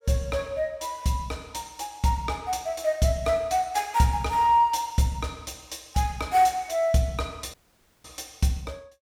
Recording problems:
audio cutting out; at 7.5 s

